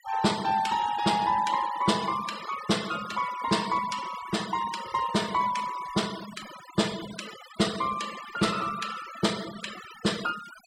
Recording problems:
denoising artefacts; signal-to-artefact ratio 13 dB

